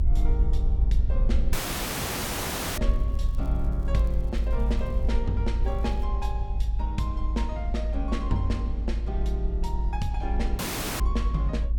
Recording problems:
low-frequency rumble; below 54 Hz, strongest tone 52 Hz, SNR -5 dB
audio cutting out; at 1.5 s for 1 s and at 11 s
crackle; from 3 to 5 s and at 5.5 s; loose cable, SNR 27 dB

